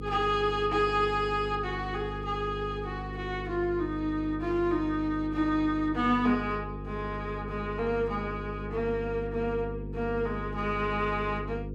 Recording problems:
hum; 50 Hz, harmonics up to 500 Hz, SNR 8 dB

